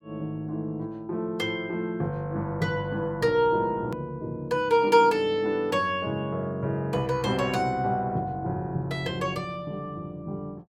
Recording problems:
hard cut with a click; at 4 s

